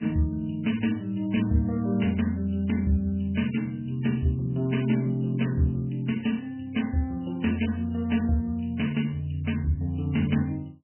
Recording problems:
lossy codec; MP3, log-spectral distance 3 dB, nothing above 3 kHz

